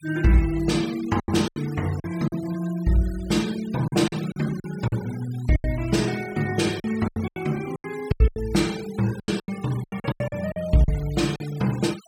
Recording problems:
denoising artefacts; signal-to-artefact ratio 17 dB
packet loss; 12% of the sound replaced, filled with silence

